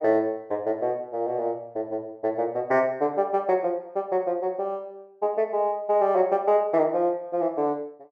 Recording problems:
none

